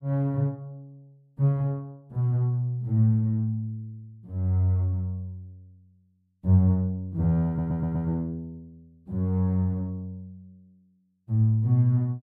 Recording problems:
stutter; at 7.5 s

